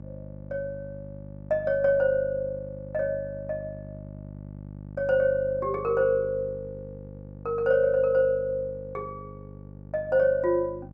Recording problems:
electrical hum; 50 Hz, harmonics up to 900 Hz, SNR 16 dB

